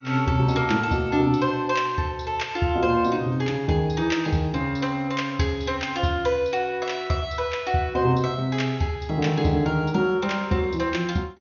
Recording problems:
lossy codec; MP2, log-spectral distance 2 dB, nothing above 6.7 kHz

